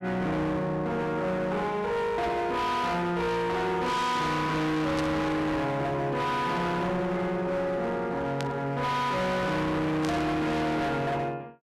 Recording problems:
distortion; hard clipping, signal-to-distortion ratio 6 dB
burst of static; at 5 s, at 8.5 s and at 10 s; peak -4 dB vs average level

